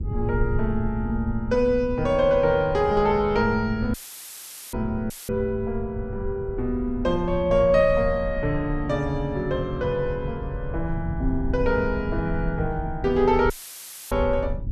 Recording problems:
low-frequency rumble; below 90 Hz, SNR 9 dB
dropout; at 4 s for 1 s, at 5 s and at 14 s for 0.5 s; filled with static

